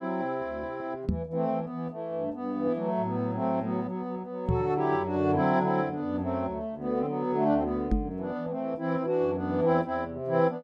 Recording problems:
microphone bump; at 1 s, at 4.5 s and at 8 s; peak +6 dB vs average level

